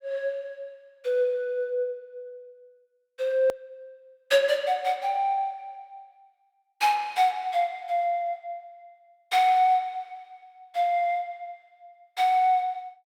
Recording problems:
hard cut with a click; at 3.5 s

